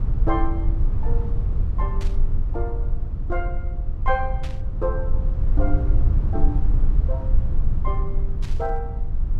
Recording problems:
low-frequency rumble; below 58 Hz, strongest tone 20 Hz, SNR -6 dB
burst of static; at 2 s, at 4.5 s and at 8.5 s; peak -5 dB vs average level

